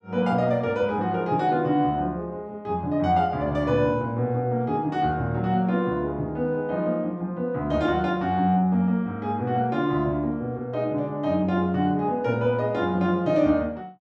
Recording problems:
none

